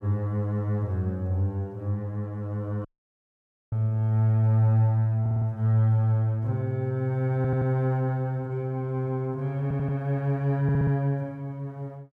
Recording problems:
dropout; at 3 s for 1 s
stutter; 4 times, first at 5 s

